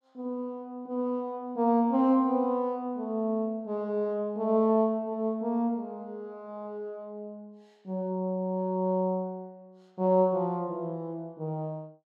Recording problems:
none

